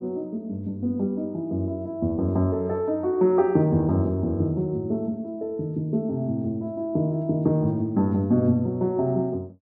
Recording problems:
none

